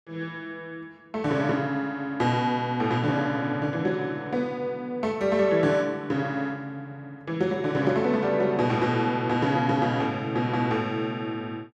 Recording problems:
none

